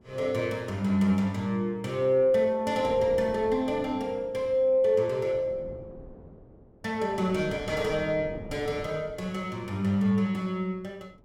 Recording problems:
wind noise; below 360 Hz, SNR 19 dB

